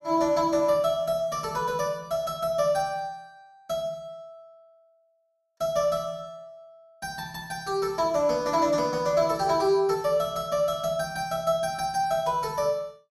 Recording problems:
none

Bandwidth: 15.5 kHz